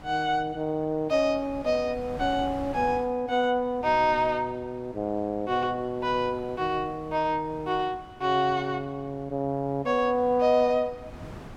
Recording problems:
wind on the microphone; below 670 Hz, SNR 19 dB

